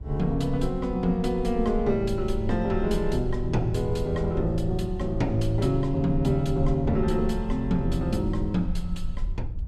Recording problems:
rumble; below 56 Hz, SNR 9 dB

